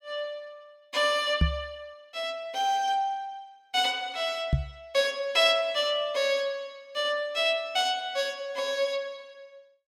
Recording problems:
microphone thump; at 1.5 s and at 4.5 s; peak +7 dB vs average level

